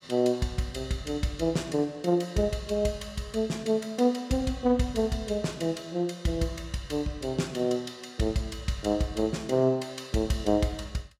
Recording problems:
none

